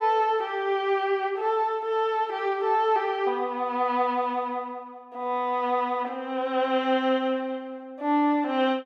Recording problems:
none

